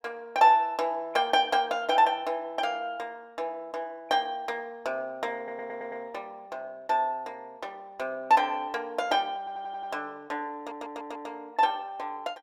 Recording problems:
audio stuttering; at 5.5 s, at 9.5 s and at 11 s

